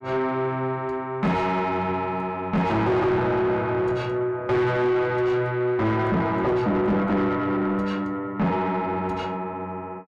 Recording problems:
distorted audio; soft clipping, signal-to-distortion ratio 7 dB

